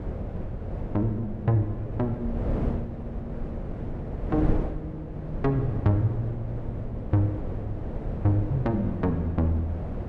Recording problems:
wind on the microphone; below 250 Hz, SNR 6 dB

